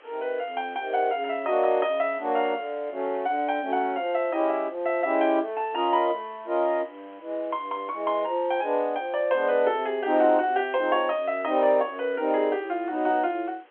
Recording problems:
telephone audio; 280 Hz to 3.3 kHz, G.711
background hiss; SNR 30 dB

